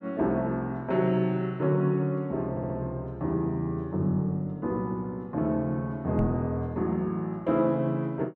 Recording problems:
stutter; at 2.5 s
microphone bump; at 6 s; peak +2 dB vs average level

